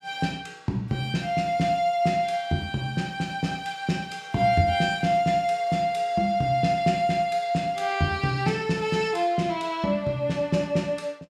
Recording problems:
none

